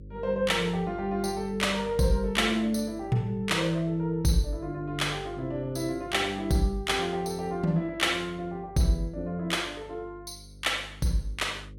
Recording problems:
hum; 50 Hz, harmonics up to 550 Hz, SNR 19 dB

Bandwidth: 17.5 kHz